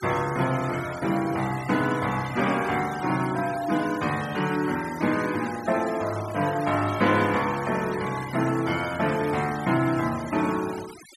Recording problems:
denoising artefacts; signal-to-artefact ratio 15 dB

